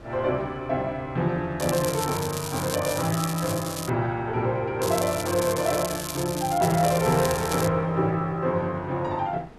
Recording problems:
wind noise; below 760 Hz, SNR 21 dB
crackling; from 1.5 to 4 s and from 5 to 7.5 s; loose cable, SNR 8 dB

